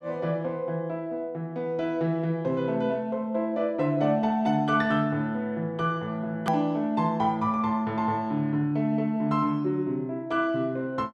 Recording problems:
hard cut with a click; at 6.5 s

